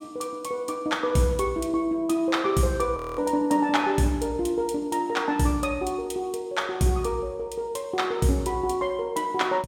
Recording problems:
frozen audio; at 3 s

